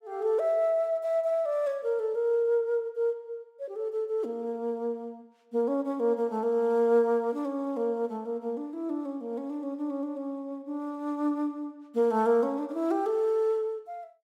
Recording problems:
none

